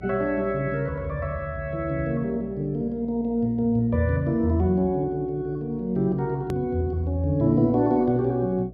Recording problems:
treble missing; nothing above 8 kHz
hum; 60 Hz, harmonics up to 720 Hz, SNR 20 dB
edit click; at 6.5 s

